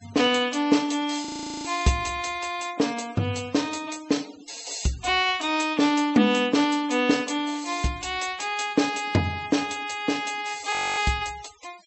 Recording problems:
low-pass filter; nothing above 8 kHz
noise reduction artefacts; signal-to-artefact ratio 21 dB
frozen audio; at 1.5 s and at 11 s

